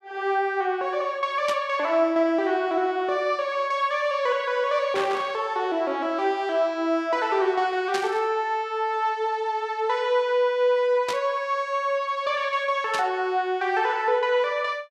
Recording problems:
static burst; 5 times, first at 1.5 s; peak -2 dB vs average level

